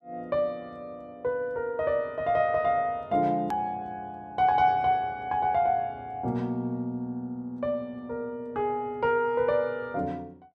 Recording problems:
click at an edit; at 3.5 s

